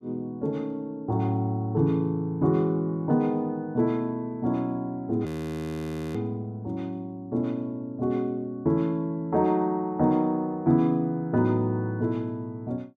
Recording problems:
audio freezing; at 5.5 s for 1 s

